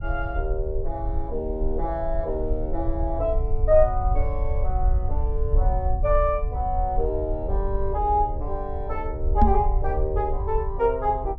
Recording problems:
treble cut off; nothing above 8 kHz
rumble; below 60 Hz, SNR 2 dB
microphone bump; at 9.5 s; peak +9 dB vs average level

